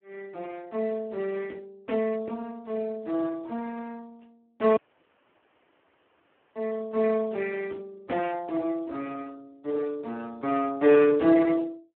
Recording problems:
telephone audio; 240 Hz to 2.8 kHz, Speex
audio cutting out; at 5 s for 2 s

